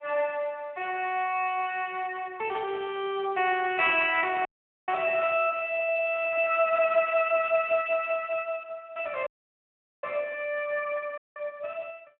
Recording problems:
phone line; 340 Hz to 3.2 kHz, Speex
audio cutting out; at 4.5 s, at 9.5 s for 1 s and at 11 s

